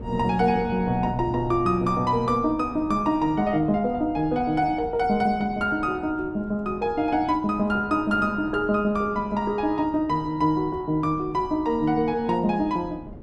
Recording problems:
wind noise; below 300 Hz, SNR 17 dB

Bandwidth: 12 kHz